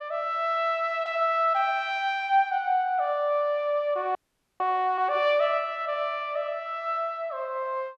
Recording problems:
audio freezing; at 4 s

